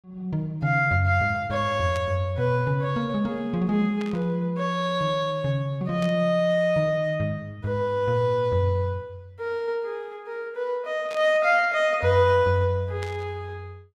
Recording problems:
static burst; 5 times, first at 2 s; peak -11 dB vs average level

